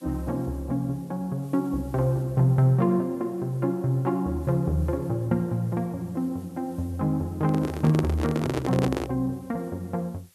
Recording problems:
background hiss; slope +2 dB per octave, SNR 29 dB
microphone handling noise; from 7.5 to 9 s; peak +3 dB vs average level

